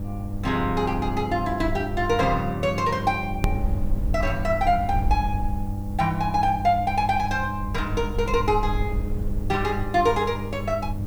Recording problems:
hum; 50 Hz, harmonics up to 800 Hz, SNR 8 dB
background hiss; slope +2 dB per octave, SNR 29 dB
low-frequency rumble; below 70 Hz, SNR 8 dB
click at an edit; at 3.5 s

